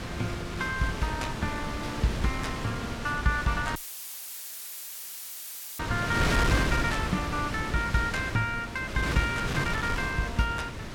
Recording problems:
wind on the microphone; below 1.5 kHz, SNR 2 dB
dropout; at 4 s for 2 s; filled with static

